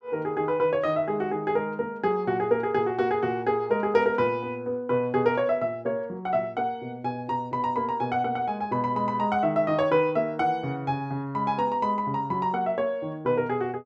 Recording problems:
none

